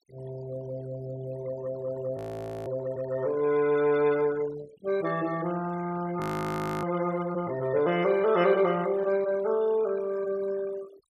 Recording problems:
noise reduction artefacts; signal-to-artefact ratio 18 dB
frozen audio; at 2 s and at 6 s for 0.5 s

